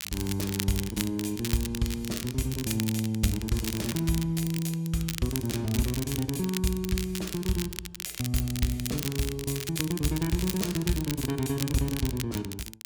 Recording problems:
crackling; vinyl, SNR 7 dB

